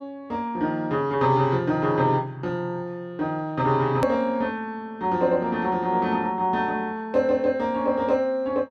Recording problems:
edit click; at 4 s

